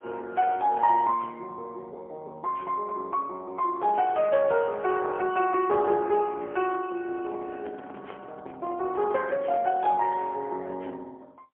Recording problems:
telephone audio; 300 Hz to 2.1 kHz, AMR-NB, then MP3
microphone handling noise; from 7.5 to 10 s; peak -10 dB vs average level

